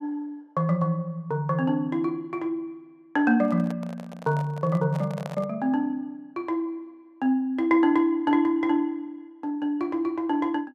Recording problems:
handling noise; from 3.5 to 5.5 s; peak -6 dB vs average level

